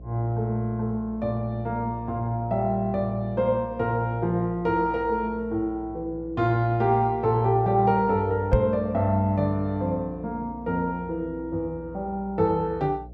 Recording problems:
hum; 60 Hz, harmonics up to 660 Hz, SNR 18 dB
knock on the microphone; at 8.5 s; peak +7 dB vs average level

